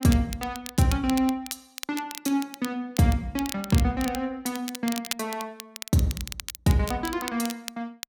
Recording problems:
crackle; vinyl, SNR 10 dB

